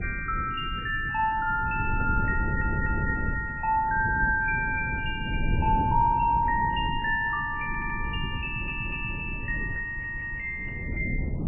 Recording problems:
codec artefacts; MP3, log-spectral distance 2 dB, nothing above 2.4 kHz
wind on the microphone; below 160 Hz, SNR 6 dB
audio stuttering; 4 times, first at 2.5 s

